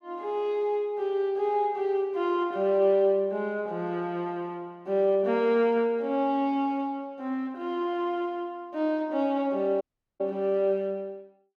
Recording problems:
audio cutting out; at 10 s

